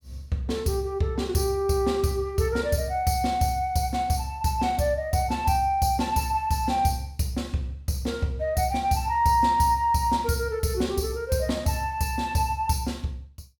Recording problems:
none

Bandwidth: 18 kHz